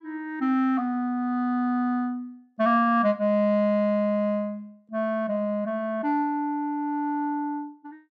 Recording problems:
none

